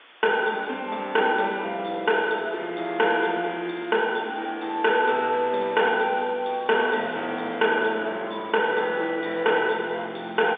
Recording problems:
telephone audio; 220 Hz to 3.6 kHz, G.711
distortion; hard clipping, signal-to-distortion ratio 11 dB
hiss; SNR 23 dB

